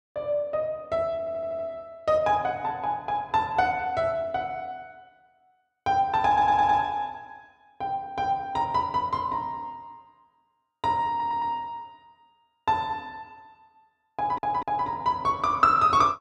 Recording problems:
stutter; 4 times, first at 1 s

